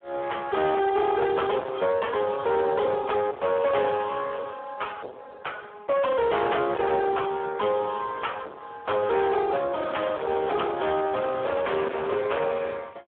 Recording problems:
phone line; 320 Hz to 3.4 kHz, Speex
distortion; soft clipping, signal-to-distortion ratio 6 dB

